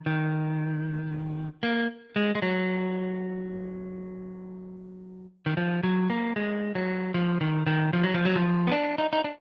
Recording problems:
lossy codec; Opus, log-spectral distance 3 dB

